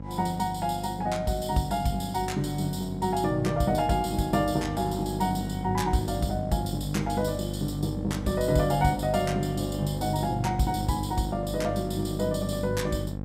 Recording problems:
mains hum; 50 Hz, harmonics up to 850 Hz, SNR 6 dB

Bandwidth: 15.5 kHz